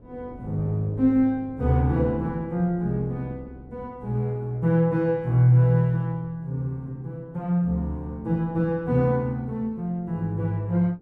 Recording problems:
wind on the microphone; below 340 Hz, SNR 23 dB

